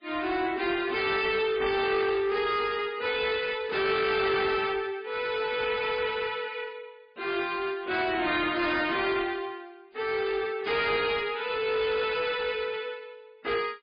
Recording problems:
lossy codec; MP3, log-spectral distance 4 dB
distorted audio; soft clipping, signal-to-distortion ratio 7 dB

